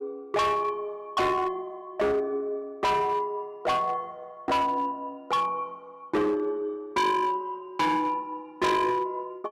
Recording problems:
distortion; hard clipping, signal-to-distortion ratio 6 dB

